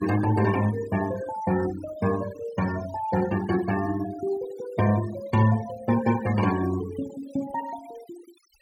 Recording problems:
denoising artefacts; signal-to-artefact ratio 15 dB

